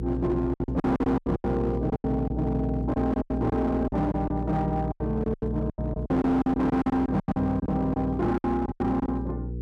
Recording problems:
distorted audio; hard clipping, uneven, signal-to-distortion ratio 11 dB
hum; 60 Hz, harmonics up to 480 Hz, SNR 7 dB
lost packets; 17% of the sound replaced, filled with silence

